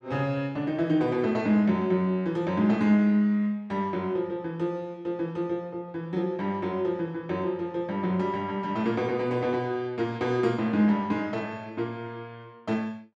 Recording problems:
none

